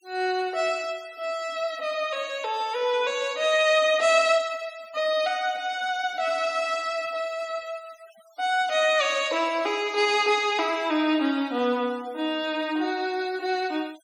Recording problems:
denoising artefacts; signal-to-artefact ratio 23 dB

